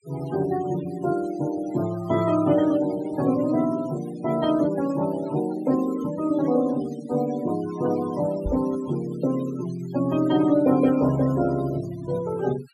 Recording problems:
denoising artefacts; signal-to-artefact ratio 17 dB
knock on the microphone; at 8.5 s; peak -1 dB vs average level

